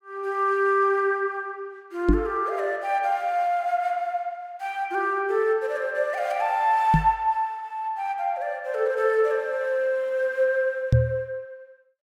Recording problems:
knock on the microphone; at 2 s, at 7 s and at 11 s; peak +8 dB vs average level

